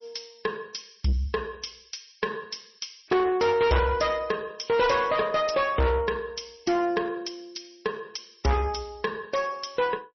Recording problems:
lossy codec; MP3, log-spectral distance 7 dB, nothing above 5.8 kHz
distorted audio; soft clipping, signal-to-distortion ratio 7 dB

